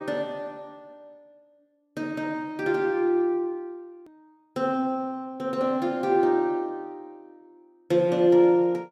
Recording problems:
click at an edit; at 4 s

